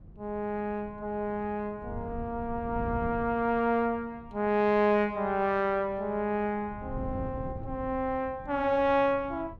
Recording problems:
wind on the microphone; below 170 Hz, SNR 15 dB

